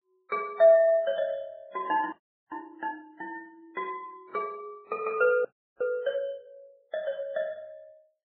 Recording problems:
low-pass filter; nothing above 4 kHz
lossy compression; Vorbis, then AAC, log-spectral distance 2 dB
audio freezing; at 2 s and at 5.5 s

